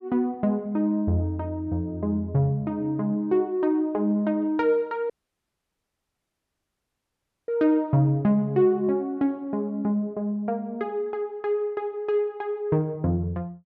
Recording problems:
dropout; at 5 s for 2.5 s

